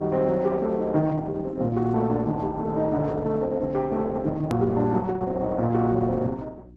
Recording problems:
lossy codec; Opus, log-spectral distance 2 dB, nothing above 13.1 kHz
electrical hum; 60 Hz, harmonics up to 360 Hz, SNR 22 dB
edit click; at 4.5 s

